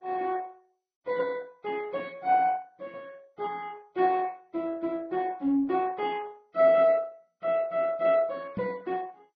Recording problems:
lossy compression; Vorbis, then MP2, log-spectral distance 3 dB
knock on the microphone; at 8.5 s; peak -2 dB vs average level

